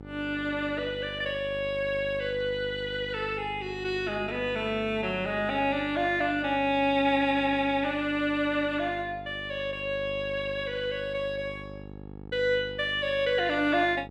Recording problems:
hum; 50 Hz, harmonics up to 950 Hz, SNR 15 dB

